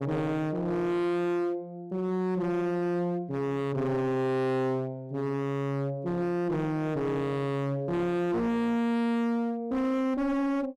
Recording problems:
distorted audio; hard clipping, uneven, signal-to-distortion ratio 6 dB

